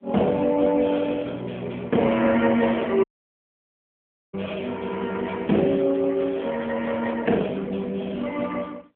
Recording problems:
phone line; 170 Hz to 3.3 kHz, AMR-NB
dropout; at 3 s for 1.5 s

